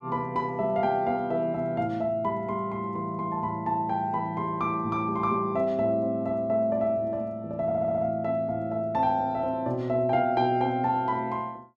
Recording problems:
stutter; at 7.5 s

